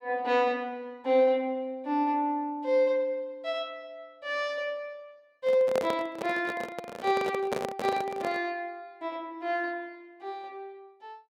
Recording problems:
microphone handling noise; from 5.5 to 8.5 s; peak +2 dB vs average level

